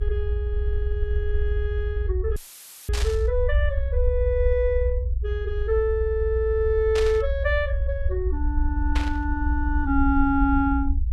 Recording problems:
rumble; below 72 Hz, SNR 1 dB
dropout; at 2.5 s for 0.5 s; filled with static
static burst; at 3 s, at 7 s and at 9 s; peak -1 dB vs average level

